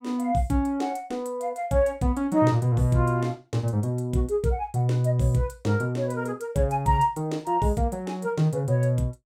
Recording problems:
none

